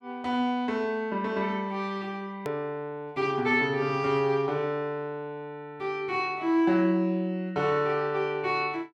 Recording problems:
hard cut with a click; at 2.5 s

